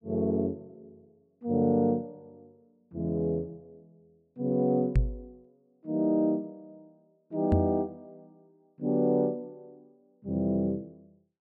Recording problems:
microphone bump; at 5 s and at 7.5 s; peak +7 dB vs average level

